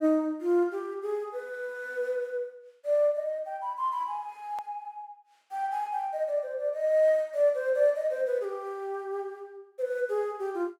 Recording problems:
click at an edit; at 4.5 s

